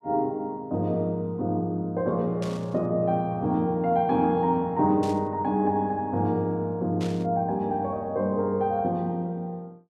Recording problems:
static burst; at 2.5 s, at 5 s and at 7 s; peak -10 dB vs average level

